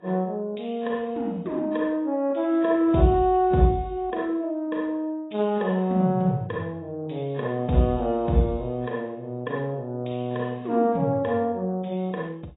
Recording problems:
codec artefacts; AAC, log-spectral distance 2 dB, nothing above 3.8 kHz

